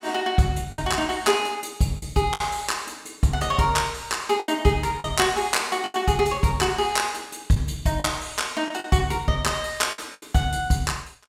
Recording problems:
packet loss; 6% of the sound replaced, filled with the last packet

